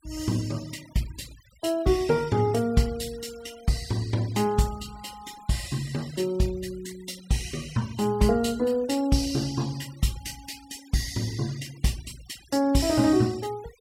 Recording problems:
noise reduction artefacts; signal-to-artefact ratio 21 dB

